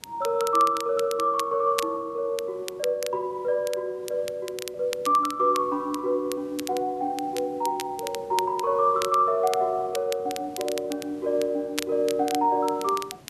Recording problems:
hiss; slope -5 dB per octave, SNR 25 dB
crackle; vinyl, SNR 13 dB

